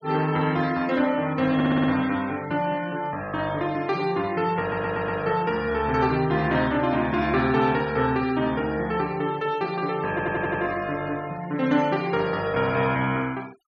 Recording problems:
denoising artefacts; signal-to-artefact ratio 21 dB
stutter; at 1.5 s, at 4.5 s and at 10 s

